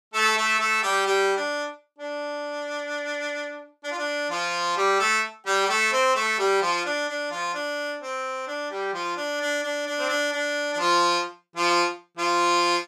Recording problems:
none

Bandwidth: 15 kHz